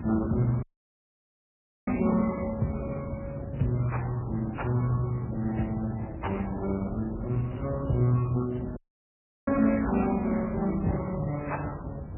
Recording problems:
codec artefacts; Speex, then MP3, log-spectral distance 3 dB, nothing above 2.5 kHz
rumble; below 130 Hz, SNR 13 dB
wind on the microphone; below 320 Hz, SNR 13 dB
dropout; at 0.5 s for 1 s and at 9 s for 0.5 s

